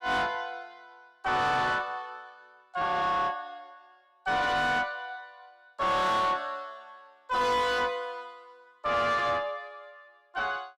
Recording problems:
distortion; soft clipping, signal-to-distortion ratio 7 dB

